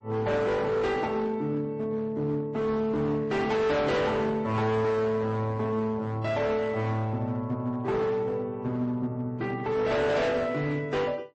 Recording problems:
codec artefacts; AAC, then MP3, log-spectral distance 2 dB, nothing above 8.2 kHz
distorted audio; hard clipping, uneven, signal-to-distortion ratio 8 dB

